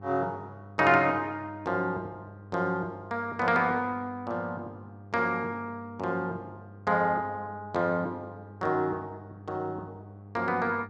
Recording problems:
electrical hum; 50 Hz, harmonics up to 800 Hz, SNR 18 dB

